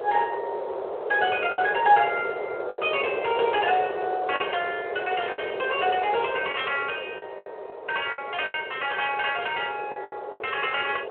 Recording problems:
phone line; 340 Hz to 3.3 kHz, Speex
wind noise; below 700 Hz, SNR 6 dB
lost packets; 6% of the sound replaced, filled with the last packet

